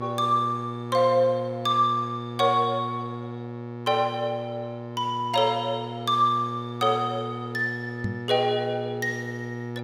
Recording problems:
electrical hum; 60 Hz, harmonics up to 1.8 kHz, SNR 10 dB
microphone thump; at 8 s; peak -1 dB vs average level

